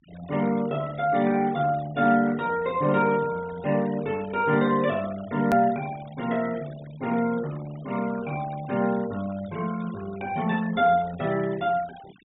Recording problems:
treble missing; nothing above 4 kHz
noise reduction artefacts; signal-to-artefact ratio 20 dB
edit click; at 5.5 s

